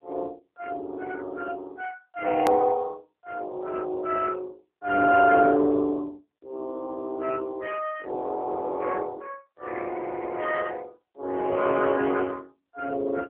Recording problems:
telephone audio; 260 Hz to 3.3 kHz, AMR-NB
click at an edit; at 2.5 s

